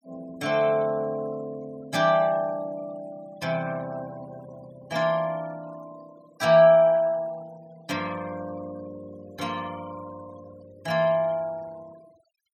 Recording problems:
denoising artefacts; signal-to-artefact ratio 24 dB

